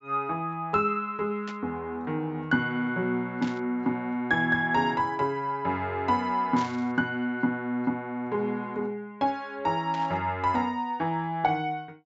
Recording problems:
treble missing; nothing above 8 kHz
burst of static; 4 times, first at 1.5 s; peak -8 dB vs average level

